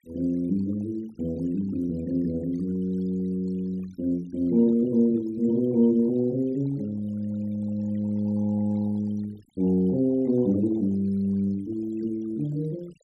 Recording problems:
denoising artefacts; signal-to-artefact ratio 26 dB

